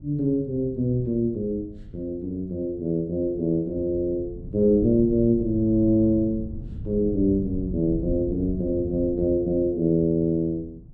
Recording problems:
wind on the microphone; below 140 Hz, SNR 14 dB

